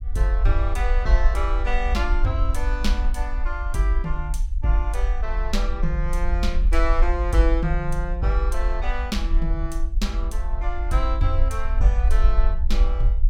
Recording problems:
low-frequency rumble; below 48 Hz, SNR -1 dB

